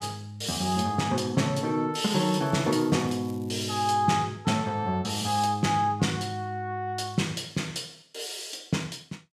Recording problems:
crackle; from 2 to 4 s; loose cable, SNR 25 dB

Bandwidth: 14.5 kHz